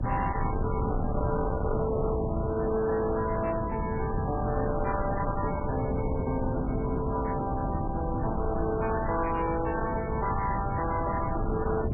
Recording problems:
lossy codec; MP3, log-spectral distance 3 dB, nothing above 2.3 kHz
distorted audio; hard clipping, signal-to-distortion ratio 10 dB
wind on the microphone; below 240 Hz, SNR 2 dB

